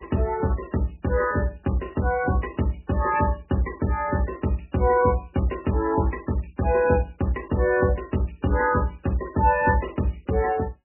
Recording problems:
lossy compression; MP3, log-spectral distance 5 dB, nothing above 2.9 kHz

